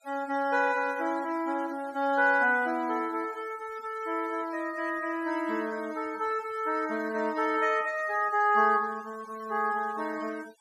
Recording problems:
noise reduction artefacts; signal-to-artefact ratio 22 dB

